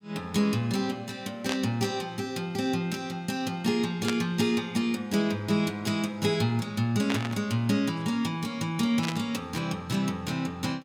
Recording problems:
burst of static; 4 times, first at 1.5 s; peak +2 dB vs average level

